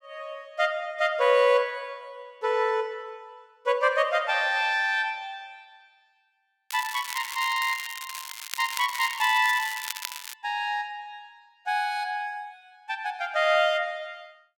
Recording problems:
crackling; from 6.5 to 10 s; loose cable, SNR 10 dB

